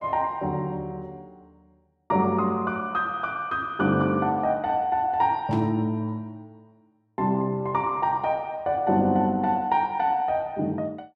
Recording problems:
static burst; at 5.5 s; peak -14 dB vs average level

